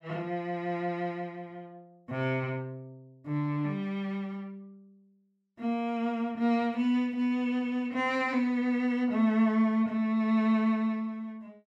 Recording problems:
none

